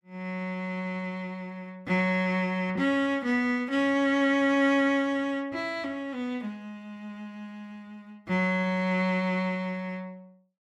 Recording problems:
none

